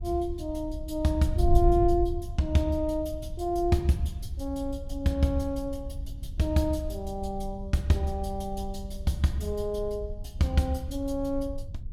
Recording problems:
wind noise; below 70 Hz, SNR 7 dB

